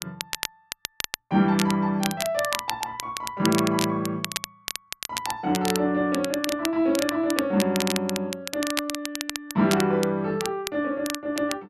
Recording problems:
crackle; vinyl, SNR 7 dB

